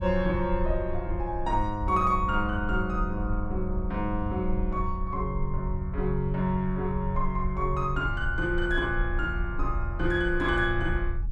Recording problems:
rumble; below 60 Hz, SNR 5 dB

